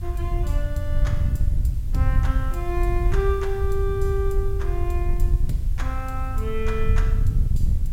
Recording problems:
hiss; slope 0 dB per octave, SNR 22 dB
wind on the microphone; below 78 Hz, SNR -5 dB

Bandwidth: 16 kHz